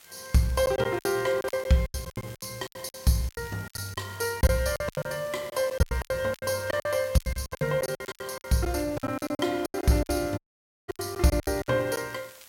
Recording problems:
hiss; slope +1 dB per octave, SNR 22 dB
crackle; vinyl, SNR 27 dB
packet loss; 21% of the sound replaced, filled with silence
dropout; at 10 s for 0.5 s

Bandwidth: 16.5 kHz